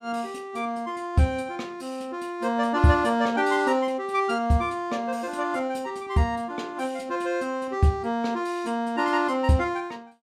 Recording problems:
none

